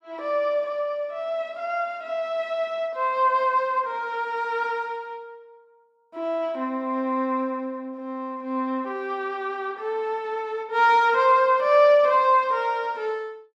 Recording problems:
none

